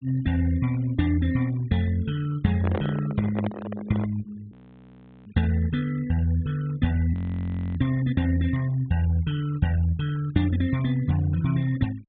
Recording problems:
treble cut off; nothing above 4 kHz
denoising artefacts; signal-to-artefact ratio 22 dB
microphone handling noise; from 2.5 to 4 s; peak -2 dB vs average level
frozen audio; at 4.5 s for 0.5 s and at 7 s for 0.5 s

